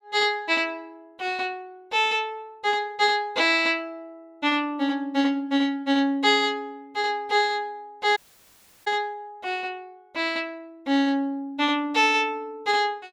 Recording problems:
audio cutting out; at 8 s for 0.5 s

